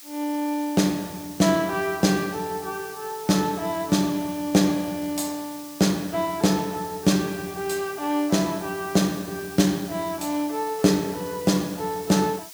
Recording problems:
background hiss; slope +3 dB per octave, SNR 16 dB

